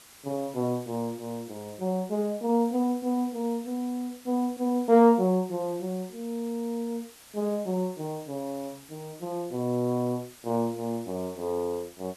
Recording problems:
hiss; slope 0 dB per octave, SNR 21 dB

